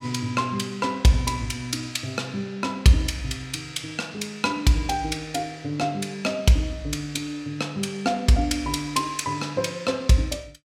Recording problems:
none

